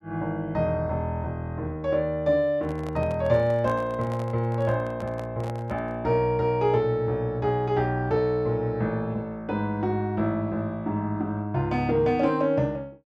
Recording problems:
microphone handling noise; from 2.5 to 6 s; peak -9 dB vs average level

